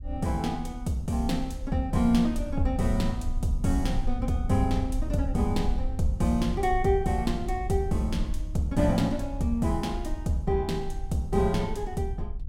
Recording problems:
low-frequency rumble; below 58 Hz, SNR 7 dB

